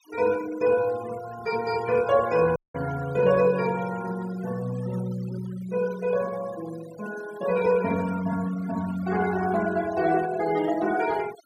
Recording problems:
noise reduction artefacts; signal-to-artefact ratio 17 dB
audio cutting out; at 2.5 s

